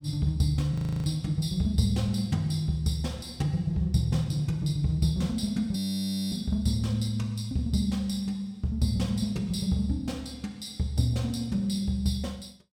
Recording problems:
frozen audio; at 0.5 s and at 6 s for 0.5 s

